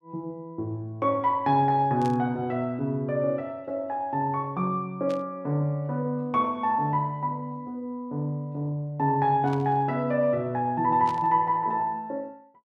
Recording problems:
static burst; 4 times, first at 2 s; peak -12 dB vs average level

